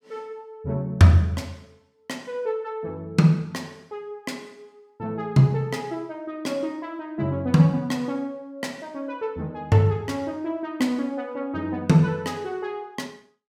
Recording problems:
none

